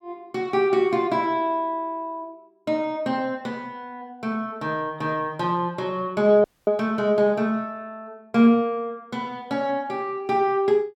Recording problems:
dropout; at 6.5 s

